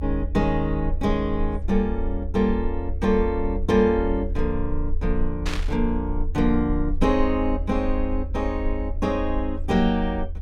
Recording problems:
rumble; below 76 Hz, strongest tone 18 Hz, SNR 6 dB
burst of static; at 5.5 s; peak -3 dB vs average level

